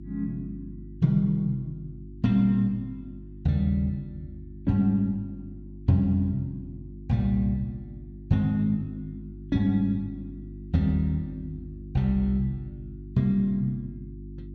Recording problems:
hum; 50 Hz, harmonics up to 350 Hz, SNR 16 dB

